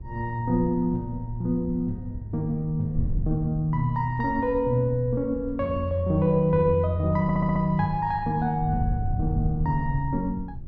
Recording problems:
wind on the microphone; below 100 Hz, SNR 10 dB
audio stuttering; at 7 s

